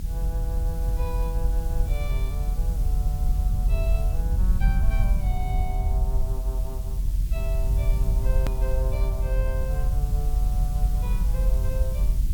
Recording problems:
hum; 60 Hz, harmonics up to 1.6 kHz, SNR 25 dB
background hiss; slope +4 dB per octave, SNR 9 dB
low-frequency rumble; below 60 Hz, strongest tone 44 Hz, SNR -11 dB
hard cut with a click; at 8.5 s

